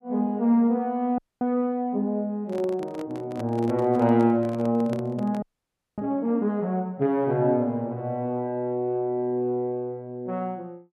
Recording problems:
audio freezing; at 1 s and at 5.5 s for 0.5 s
handling noise; from 2.5 to 6 s; peak -7 dB vs average level

